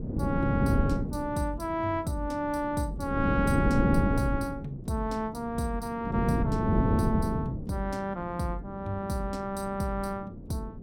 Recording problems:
wind noise; below 260 Hz, SNR -2 dB

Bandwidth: 16.5 kHz